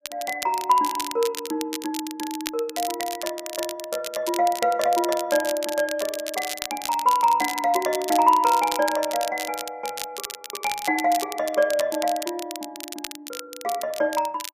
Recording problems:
crackling; vinyl, SNR 9 dB

